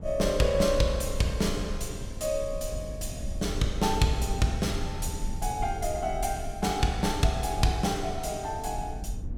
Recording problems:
rumble; below 88 Hz, SNR 8 dB

